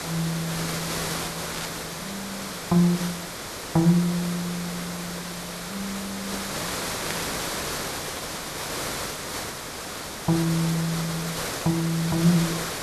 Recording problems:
hiss; slope -3 dB per octave, SNR 4 dB
burst of static; at 1.5 s and at 7 s; peak -3 dB vs average level

